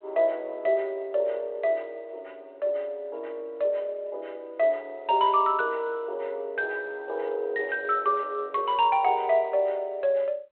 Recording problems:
telephone audio; 340 Hz to 3.3 kHz, G.726

